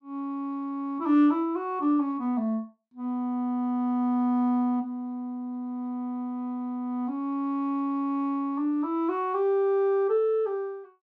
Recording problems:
none

